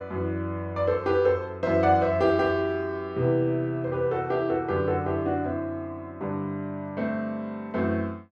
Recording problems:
none

